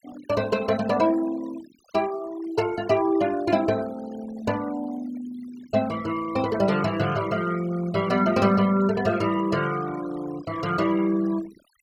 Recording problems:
noise reduction artefacts; signal-to-artefact ratio 18 dB

